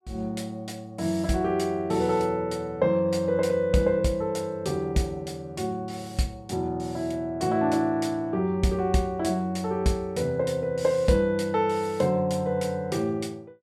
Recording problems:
none

